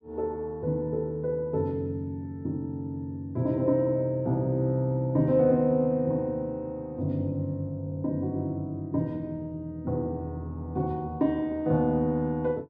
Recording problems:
audio stuttering; at 8 s

